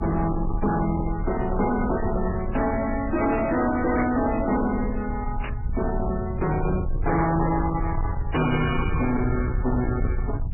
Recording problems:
lossy compression; MP3, then AAC, log-spectral distance 3 dB, nothing above 2.4 kHz
distorted audio; soft clipping, signal-to-distortion ratio 8 dB
low-frequency rumble; below 120 Hz, SNR 5 dB
burst of static; at 4 s and at 5.5 s; peak -7 dB vs average level

